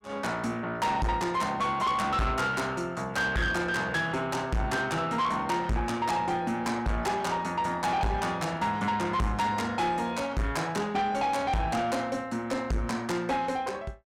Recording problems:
distortion; soft clipping, signal-to-distortion ratio 7 dB

